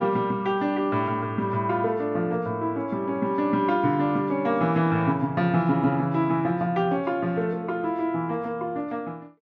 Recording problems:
none

